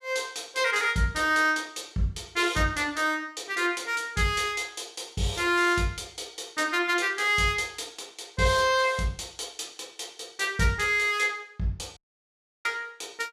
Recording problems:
dropout; at 12 s for 0.5 s

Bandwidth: 14 kHz